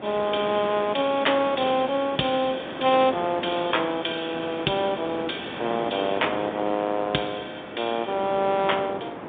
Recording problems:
phone line; 170 Hz to 3.7 kHz, G.711
wind on the microphone; below 960 Hz, SNR 10 dB

